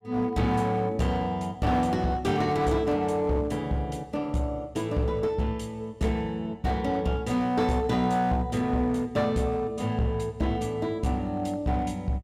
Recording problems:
distortion; hard clipping, uneven, signal-to-distortion ratio 11 dB

